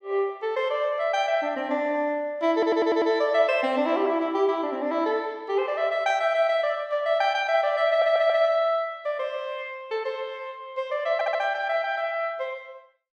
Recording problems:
audio stuttering; at 2.5 s, at 8 s and at 11 s

